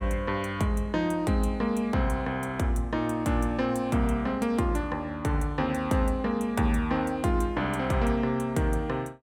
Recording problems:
none

